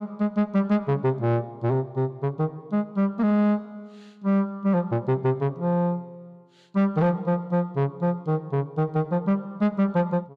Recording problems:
distortion; soft clipping, signal-to-distortion ratio 11 dB

